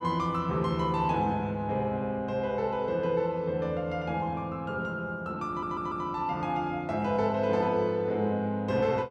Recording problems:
stutter; at 5.5 s

